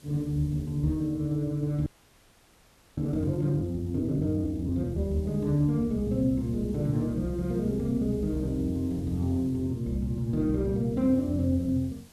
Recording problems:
hiss; SNR 28 dB
frozen audio; at 2 s for 1 s

